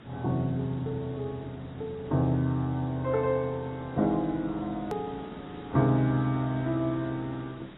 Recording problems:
lossy compression; AAC, log-spectral distance 6 dB, nothing above 13.1 kHz
hiss; SNR 18 dB
click at an edit; at 5 s

